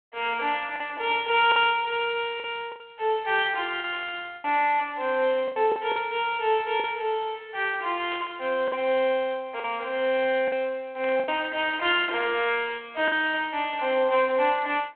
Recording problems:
telephone audio; 280 Hz to 3.4 kHz, G.726
packet loss; 5% of the sound replaced, filled with the last packet
static burst; 4 times, first at 1.5 s; peak -12 dB vs average level

